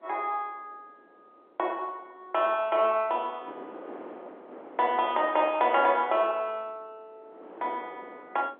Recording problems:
telephone audio; 260 Hz to 3.4 kHz, G.711
wind on the microphone; below 780 Hz, SNR 18 dB

